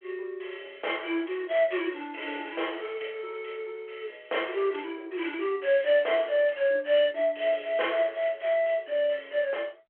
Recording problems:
phone line; 300 Hz to 3.3 kHz, G.726

